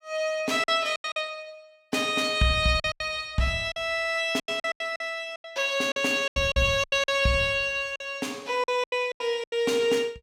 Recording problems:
packet loss; 13% of the sound replaced, filled with silence

